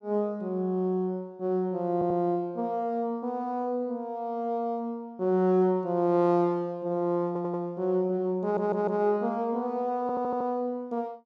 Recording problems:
audio stuttering; 4 times, first at 2 s

